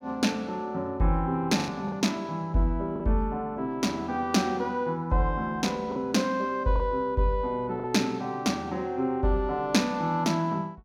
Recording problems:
lost packets; 3% of the sound replaced, filled with the last packet

